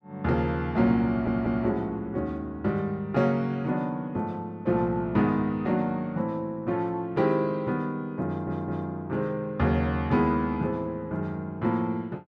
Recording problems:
stutter; at 1 s and at 8.5 s

